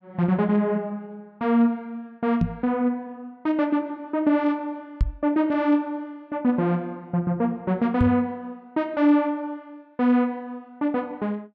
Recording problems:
microphone bump; at 2.5 s, at 5 s and at 8 s; peak +5 dB vs average level

